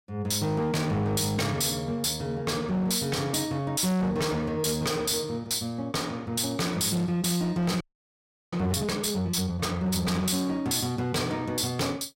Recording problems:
distortion; hard clipping, uneven, signal-to-distortion ratio 7 dB
frozen audio; at 8 s for 0.5 s

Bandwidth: 16 kHz